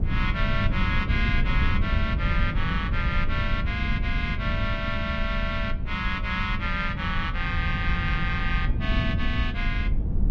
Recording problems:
low-frequency rumble; below 100 Hz, SNR 0 dB

